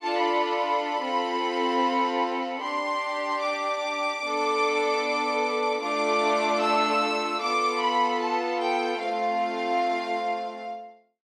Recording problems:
none

